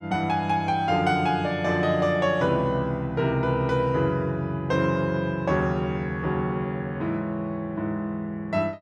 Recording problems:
none

